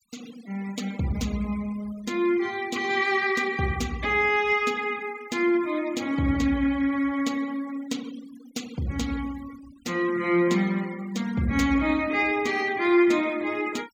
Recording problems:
denoising artefacts; signal-to-artefact ratio 20 dB

